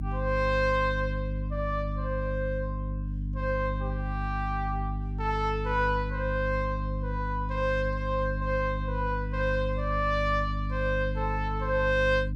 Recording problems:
hum; 50 Hz, harmonics up to 300 Hz, SNR 3 dB

